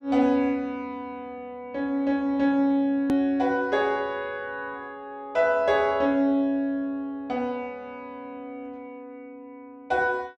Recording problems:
click at an edit; at 3 s

